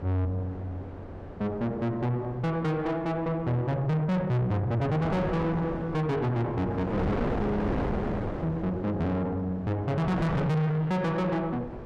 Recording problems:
distorted audio; soft clipping, signal-to-distortion ratio 6 dB
wind noise; below 640 Hz, SNR 7 dB

